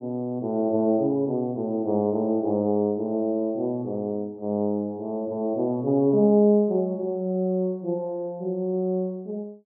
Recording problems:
none

